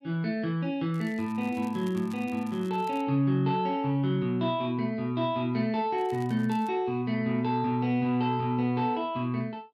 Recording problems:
crackling; from 1 to 3 s and at 6 s; loose cable, SNR 26 dB

